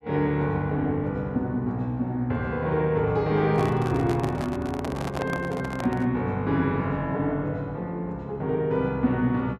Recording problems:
handling noise; from 3.5 to 6 s; peak -2 dB vs average level

